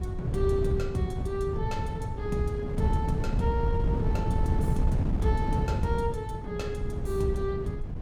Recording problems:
wind on the microphone; below 150 Hz, SNR -1 dB

